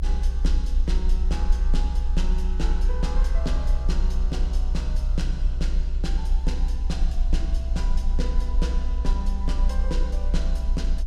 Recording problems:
rumble; below 60 Hz, strongest tone 28 Hz, SNR -8 dB

